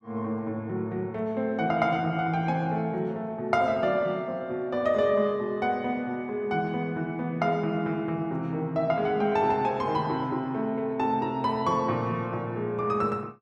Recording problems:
none

